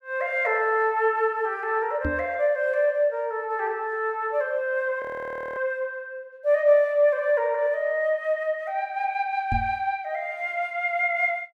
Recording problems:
microphone thump; at 2 s and at 9.5 s; peak -1 dB vs average level
audio freezing; at 5 s for 0.5 s

